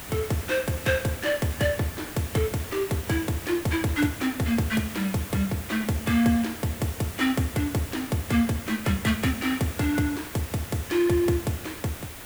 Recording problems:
hiss; slope -3 dB per octave, SNR 12 dB

